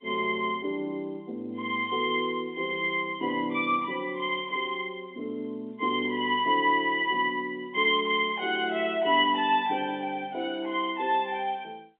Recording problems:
phone line; 240 Hz to 3.7 kHz, G.711

